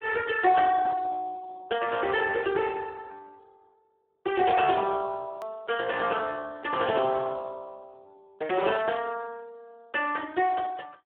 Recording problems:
telephone audio; 320 Hz to 3.1 kHz, Speex
hard cut with a click; at 5.5 s

